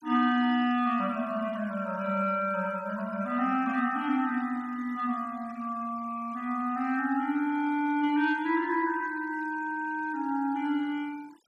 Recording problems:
noise reduction artefacts; signal-to-artefact ratio 24 dB

